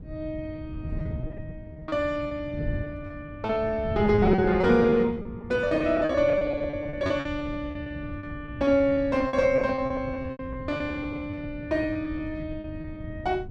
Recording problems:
wind noise; below 160 Hz, SNR 12 dB
lost packets; 18% of the sound replaced, filled with repeated pitch periods

